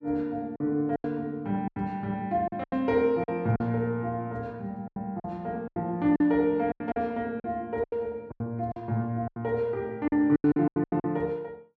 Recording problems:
packet loss; 12% of the sound replaced, filled with silence

